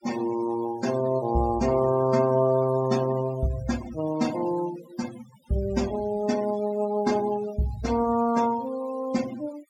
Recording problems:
noise reduction artefacts; signal-to-artefact ratio 17 dB

